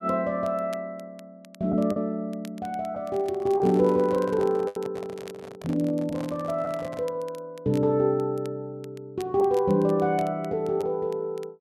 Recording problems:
crackle; vinyl, SNR 26 dB
lost packets; 2% of the sound replaced, filled with the last packet
microphone handling noise; from 3 to 7 s; peak -9 dB vs average level

